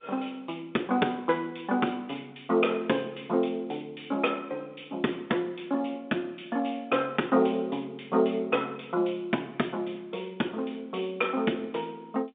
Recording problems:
phone line; 190 Hz to 3.7 kHz, G.711

